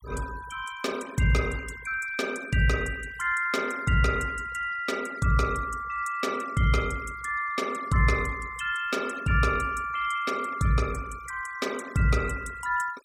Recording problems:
denoising artefacts; signal-to-artefact ratio 18 dB

